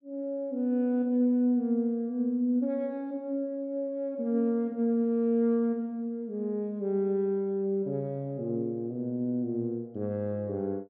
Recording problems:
none

